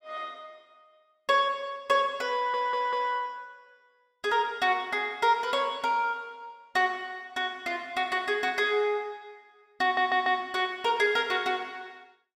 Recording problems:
stutter; at 2.5 s and at 10 s

